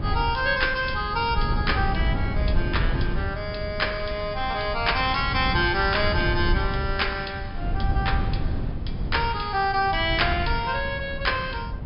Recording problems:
treble cut off; nothing above 5.5 kHz
wind noise; below 130 Hz, SNR 4 dB

